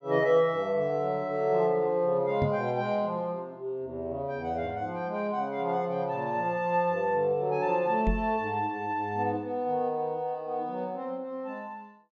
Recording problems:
treble missing; nothing above 7.9 kHz
microphone bump; at 2.5 s and at 8 s; peak +3 dB vs average level

